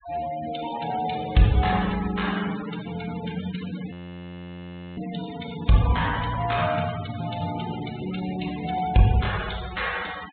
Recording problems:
low-pass filter; nothing above 4 kHz
noise reduction artefacts; signal-to-artefact ratio 13 dB
audio freezing; at 4 s for 1 s

